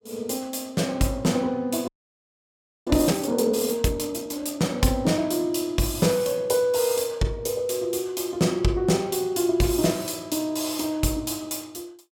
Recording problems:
audio freezing; at 2 s for 1 s

